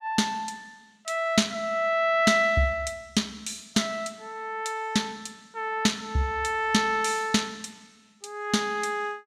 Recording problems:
none

